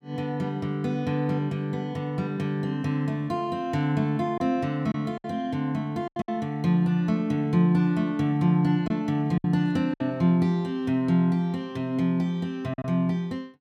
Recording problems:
packet loss; 3% of the sound replaced, filled with silence

